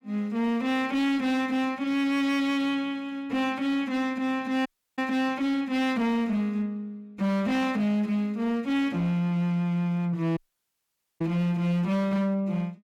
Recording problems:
distorted audio; hard clipping, signal-to-distortion ratio 11 dB
audio cutting out; at 4.5 s and at 10 s for 1 s

